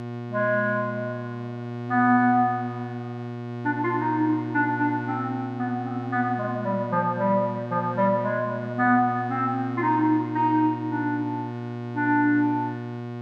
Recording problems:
electrical hum; 60 Hz, harmonics up to 1.8 kHz, SNR 9 dB

